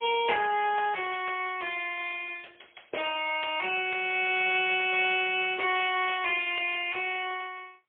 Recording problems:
phone line; 320 Hz to 3.3 kHz, AMR-NB, then MP3

